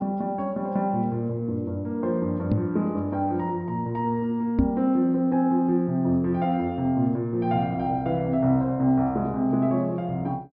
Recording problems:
treble missing; nothing above 5.5 kHz
microphone bump; at 2.5 s and at 4.5 s; peak +7 dB vs average level

